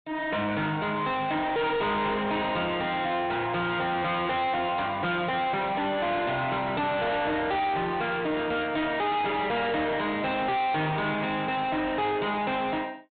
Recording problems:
treble missing; nothing above 4 kHz
distorted audio; soft clipping, signal-to-distortion ratio 6 dB

